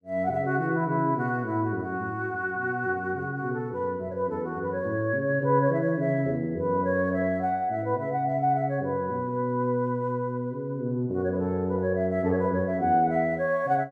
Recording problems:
none

